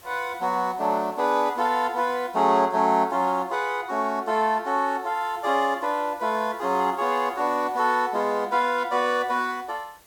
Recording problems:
hiss; slope -2 dB per octave, SNR 27 dB

